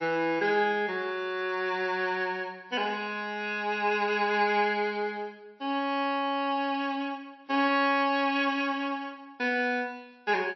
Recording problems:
codec artefacts; MP3, log-spectral distance 3 dB, nothing above 5 kHz

